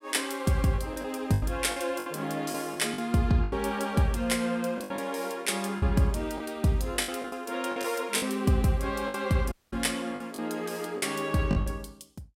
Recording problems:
lost packets; 9% of the sound replaced, filled with the last packet
dropout; at 9.5 s

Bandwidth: 16 kHz